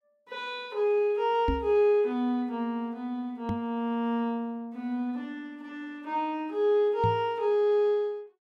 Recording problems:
microphone thump; at 1.5 s, at 3.5 s and at 7 s; peak +2 dB vs average level

